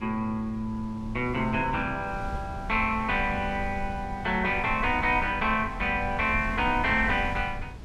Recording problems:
wind noise; below 120 Hz, SNR 11 dB

